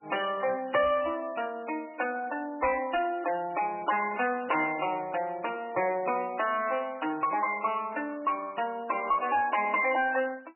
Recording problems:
codec artefacts; MP3, log-spectral distance 4 dB, nothing above 2.9 kHz
distorted audio; soft clipping, signal-to-distortion ratio 10 dB

